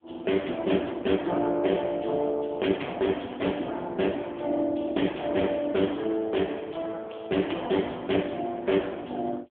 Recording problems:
phone line; 240 Hz to 3.4 kHz, AMR-NB

